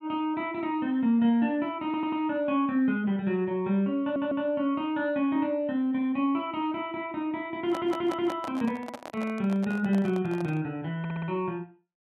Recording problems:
audio stuttering; 4 times, first at 2 s
handling noise; from 7.5 to 11 s; peak -6 dB vs average level

